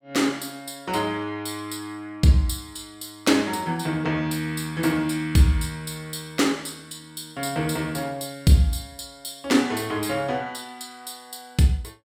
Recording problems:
none

